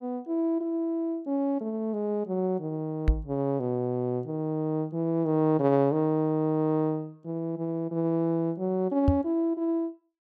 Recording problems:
microphone bump; at 3 s and at 9 s; peak +7 dB vs average level

